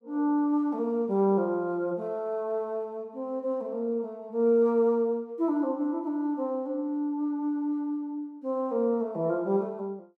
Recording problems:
none

